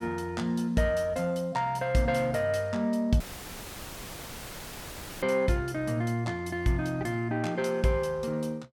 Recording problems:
audio cutting out; at 3 s for 2 s; filled with static

